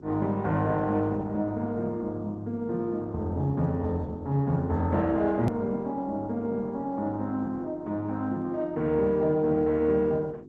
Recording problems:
codec artefacts; G.722, then Opus, log-spectral distance 2 dB, nothing above 13.1 kHz
hum; 50 Hz, harmonics up to 400 Hz, SNR 20 dB
edit click; at 5.5 s

